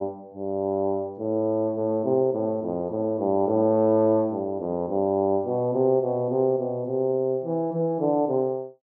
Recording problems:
low-pass filter; nothing above 8 kHz

